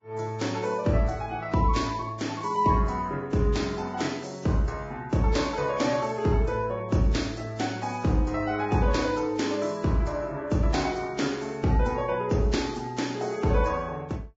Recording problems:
codec artefacts; Vorbis, log-spectral distance 4 dB, nothing above 7.3 kHz

